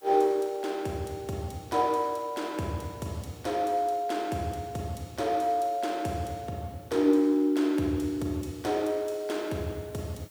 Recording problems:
background hiss; slope 0 dB per octave, SNR 28 dB

